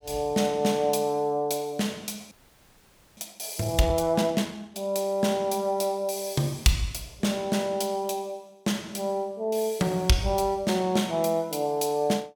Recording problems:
frozen audio; at 2.5 s for 1 s

